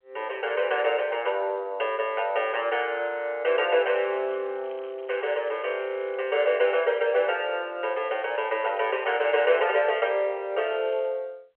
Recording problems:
phone line; 340 Hz to 3.3 kHz, G.711
crackle; from 4 to 7 s, from 8 to 9 s and at 11 s; loose cable, SNR 28 dB

